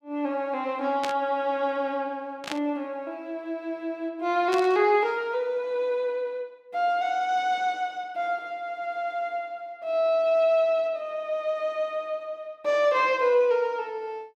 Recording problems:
burst of static; at 1 s, at 2.5 s and at 4.5 s; peak -2 dB vs average level

